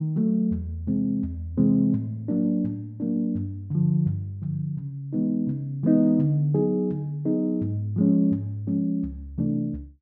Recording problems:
none

